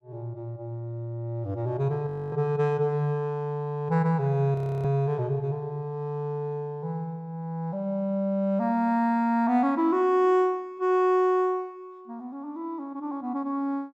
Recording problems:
audio freezing; at 2 s and at 4.5 s

